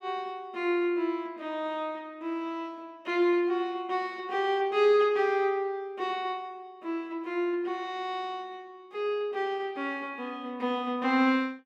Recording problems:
none

